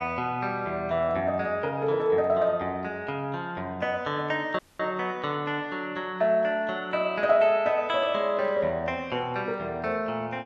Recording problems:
dropout; at 4.5 s

